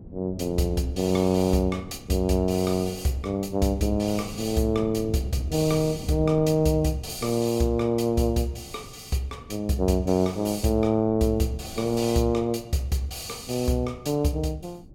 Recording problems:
wind on the microphone; below 240 Hz, SNR 18 dB

